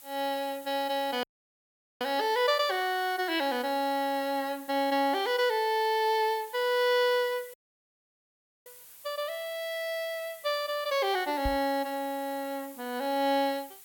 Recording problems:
hiss; slope +1 dB per octave, SNR 19 dB
dropout; at 1 s for 1 s and at 7.5 s for 1 s
knock on the microphone; at 11 s; peak -2 dB vs average level

